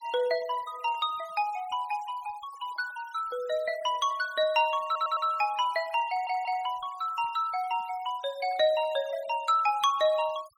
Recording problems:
noise reduction artefacts; signal-to-artefact ratio 21 dB
stutter; at 5 s and at 6 s

